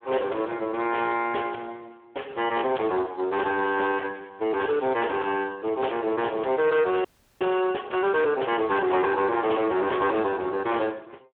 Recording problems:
phone line; 300 Hz to 3.3 kHz, Speex
distorted audio; hard clipping, signal-to-distortion ratio 12 dB
audio freezing; at 7 s

